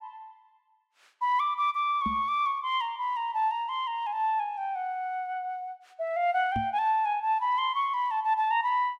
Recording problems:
knock on the microphone; at 2 s and at 6.5 s; peak -3 dB vs average level

